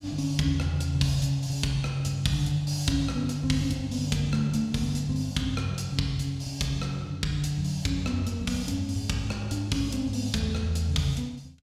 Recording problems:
none

